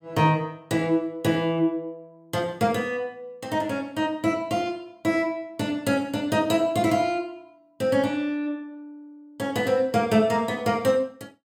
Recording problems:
none

